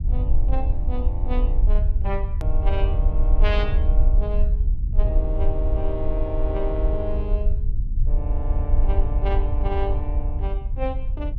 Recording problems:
low-frequency rumble; below 56 Hz, SNR -7 dB
hard cut with a click; at 2.5 s

